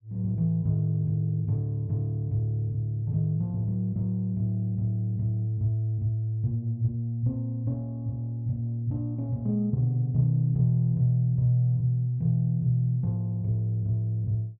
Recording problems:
none

